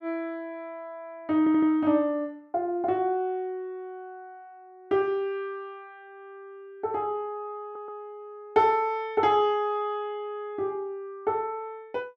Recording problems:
stutter; at 1.5 s and at 7.5 s

